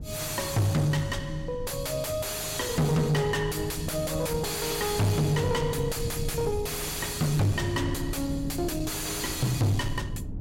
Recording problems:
distortion; soft clipping, signal-to-distortion ratio 5 dB
rumble; below 150 Hz, SNR 11 dB

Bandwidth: 16 kHz